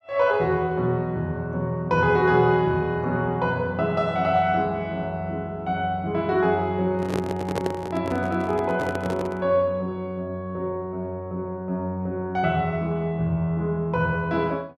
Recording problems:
handling noise; from 7 to 9.5 s; peak +1 dB vs average level

